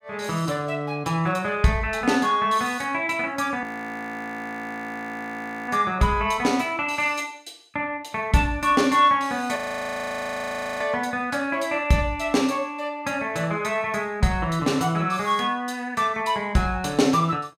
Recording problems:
frozen audio; at 3.5 s for 2 s and at 9.5 s for 1 s

